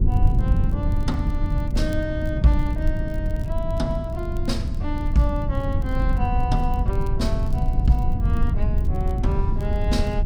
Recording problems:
rumble; below 96 Hz, SNR -3 dB
crackling; vinyl, SNR 27 dB

